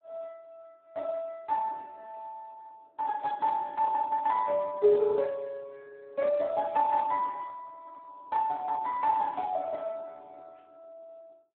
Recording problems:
telephone audio; 220 Hz to 2 kHz, Speex

